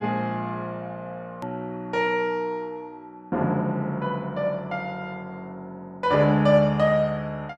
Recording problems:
hard cut with a click; at 1.5 s

